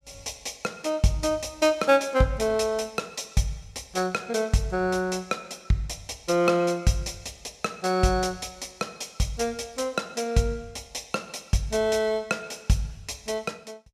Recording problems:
none

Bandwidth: 14.5 kHz